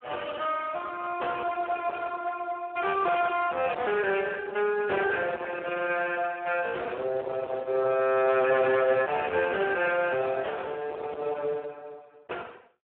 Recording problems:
phone line; 300 Hz to 3 kHz, Speex
distorted audio; soft clipping, signal-to-distortion ratio 9 dB

